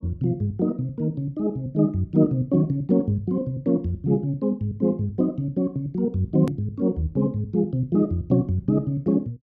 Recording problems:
hard cut with a click; at 6.5 s

